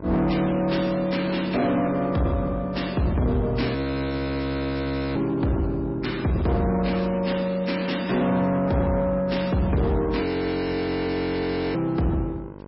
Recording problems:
lossy codec; MP3, log-spectral distance 3 dB, nothing above 5.5 kHz
distorted audio; soft clipping, signal-to-distortion ratio 11 dB
hum; 50 Hz, harmonics up to 1.6 kHz, SNR 18 dB
audio freezing; at 4 s for 1.5 s and at 10 s for 1.5 s

